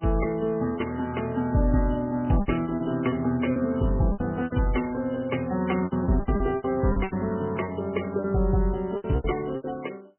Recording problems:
codec artefacts; MP3, log-spectral distance 5 dB, nothing above 3 kHz
packet loss; 12% of the sound replaced, filled with repeated pitch periods

